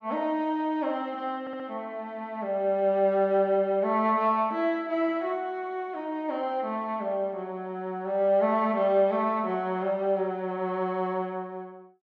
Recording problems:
stutter; at 1.5 s

